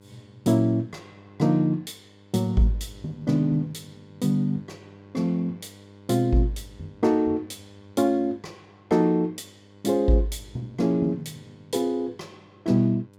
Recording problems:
hum; 50 Hz, harmonics up to 1.6 kHz, SNR 25 dB

